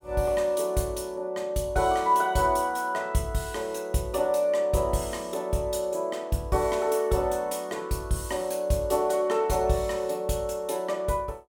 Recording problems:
none

